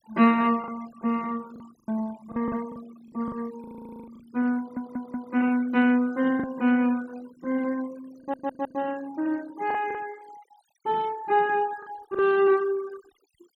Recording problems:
denoising artefacts; signal-to-artefact ratio 23 dB
packet loss; 6% of the sound replaced, filled with the last packet
audio stuttering; at 3.5 s, at 4.5 s and at 8 s

